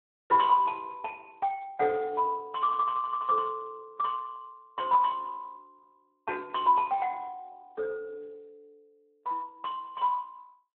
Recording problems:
telephone audio; 300 Hz to 3 kHz, Speex

